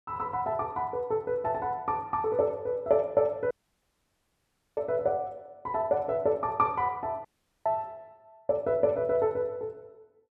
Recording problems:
dropout; at 3.5 s for 1.5 s and at 7.5 s

